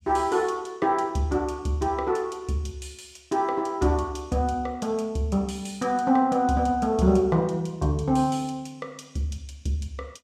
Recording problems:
none

